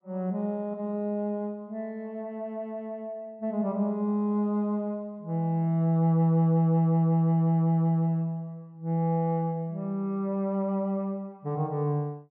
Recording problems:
none

